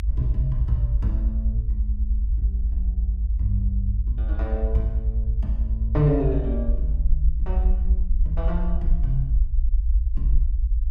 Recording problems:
low-frequency rumble; below 60 Hz, strongest tone 50 Hz, SNR -5 dB

